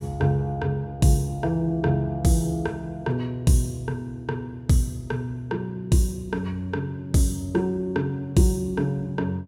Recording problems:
none

